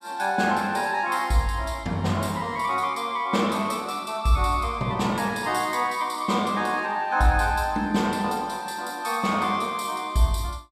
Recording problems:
none

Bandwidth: 14.5 kHz